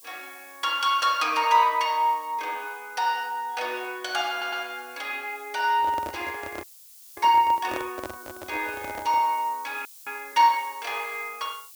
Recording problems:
background hiss; SNR 21 dB
stutter; at 4.5 s
handling noise; from 5.5 to 9.5 s; peak -5 dB vs average level
frozen audio; at 6.5 s for 0.5 s and at 10 s

